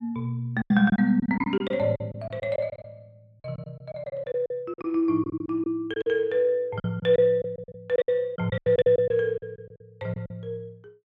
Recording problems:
packet loss; 15% of the sound replaced, filled with silence

